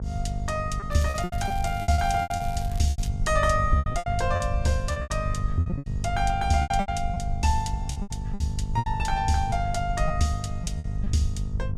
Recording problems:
hum; 50 Hz, harmonics up to 700 Hz, SNR 7 dB
rumble; below 84 Hz, SNR 6 dB
lost packets; 13% of the sound replaced, filled with repeated pitch periods
crackling; from 1 to 3 s; loose cable, SNR 19 dB

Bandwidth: 14.5 kHz